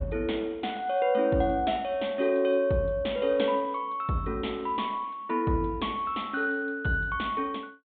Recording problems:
low-pass filter; nothing above 4 kHz

